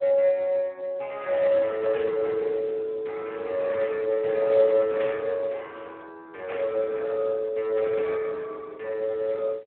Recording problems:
telephone audio; 300 Hz to 3.3 kHz, Speex
static burst; at 2 s, at 5 s and at 6.5 s; peak -9 dB vs average level

